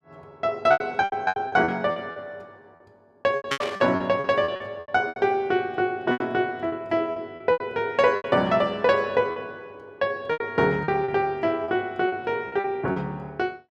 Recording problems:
lost packets; 13% of the sound replaced, filled with repeated pitch periods
static burst; at 3.5 s; peak +3 dB vs average level

